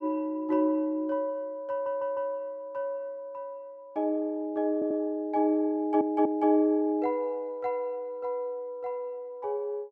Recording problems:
audio stuttering; at 1.5 s, at 4.5 s and at 6 s

